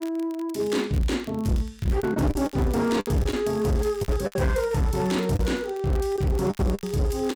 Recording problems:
distorted audio; hard clipping, signal-to-distortion ratio 7 dB
crackling; vinyl, SNR 23 dB
packet loss; 8% of the sound replaced, filled with the last packet

